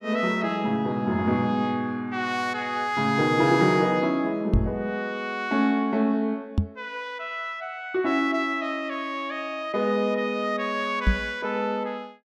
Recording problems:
microphone bump; at 4.5 s, at 6.5 s and at 11 s; peak +7 dB vs average level

